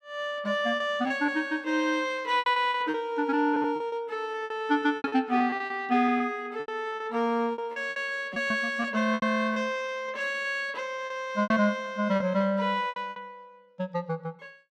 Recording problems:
lost packets; 12% of the sound replaced, filled with repeated pitch periods

